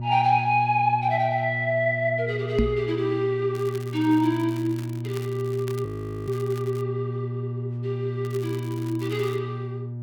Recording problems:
electrical hum; 60 Hz, harmonics up to 600 Hz, SNR 6 dB
knock on the microphone; at 2.5 s; peak +6 dB vs average level
crackling; from 3.5 to 7 s and from 8 to 9.5 s; loose cable, SNR 22 dB
frozen audio; at 6 s

